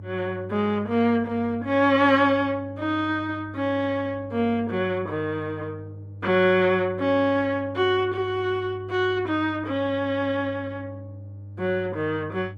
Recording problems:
lossy compression; Opus, log-spectral distance 2 dB
hum; 50 Hz, harmonics up to 300 Hz, SNR 15 dB

